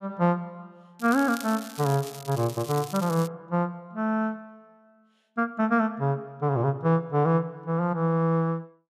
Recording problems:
crackling; from 1 to 3.5 s; loose cable, SNR 15 dB

